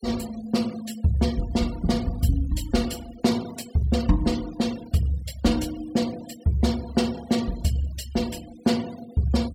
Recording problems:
noise reduction artefacts; signal-to-artefact ratio 19 dB

